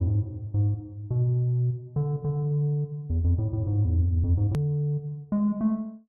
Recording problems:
hard cut with a click; at 4.5 s

